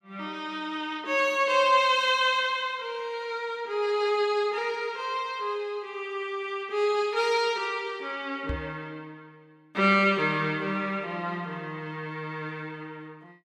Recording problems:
microphone bump; at 8.5 s; peak -3 dB vs average level

